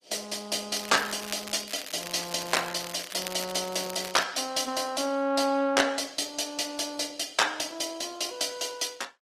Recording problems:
codec artefacts; Opus, log-spectral distance 7 dB, nothing above 14.7 kHz
crackling; from 0.5 to 4 s; loose cable, SNR 11 dB

